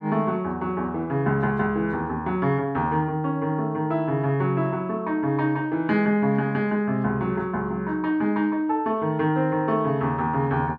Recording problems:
none

